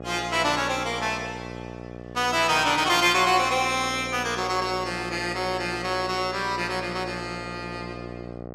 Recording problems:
hum; 60 Hz, harmonics up to 1.4 kHz, SNR 14 dB

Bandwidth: 15.5 kHz